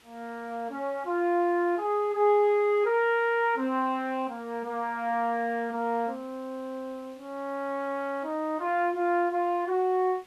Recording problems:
background hiss; SNR 29 dB

